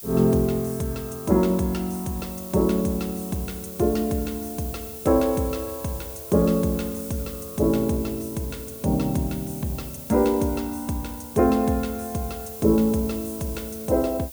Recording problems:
background hiss; SNR 13 dB

